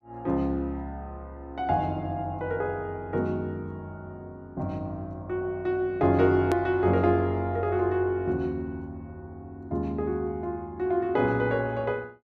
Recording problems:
click at an edit; at 6.5 s

